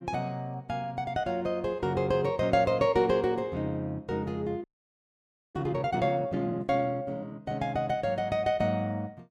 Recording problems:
frozen audio; at 4.5 s for 1 s

